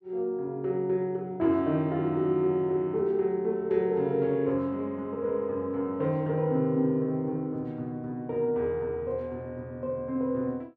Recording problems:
none

